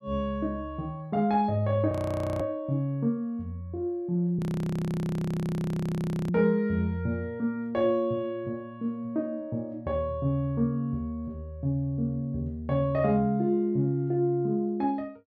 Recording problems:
audio freezing; at 2 s and at 4.5 s for 2 s

